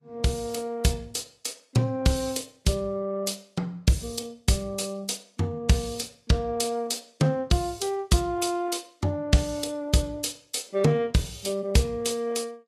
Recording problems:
codec artefacts; Vorbis, log-spectral distance 4 dB, nothing above 12.3 kHz

